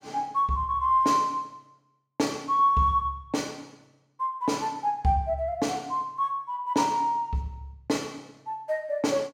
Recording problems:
none

